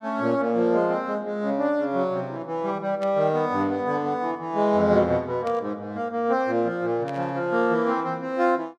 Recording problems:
burst of static; at 3 s, at 5.5 s and at 7 s; peak -13 dB vs average level

